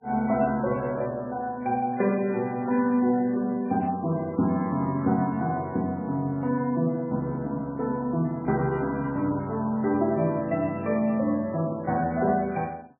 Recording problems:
lossy compression; MP3, log-spectral distance 2 dB, nothing above 2.4 kHz

